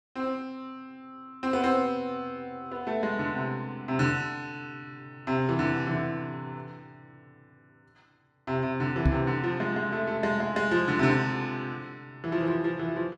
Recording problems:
knock on the microphone; at 9 s; peak +8 dB vs average level

